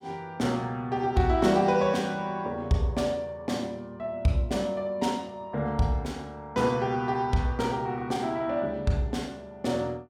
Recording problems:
none

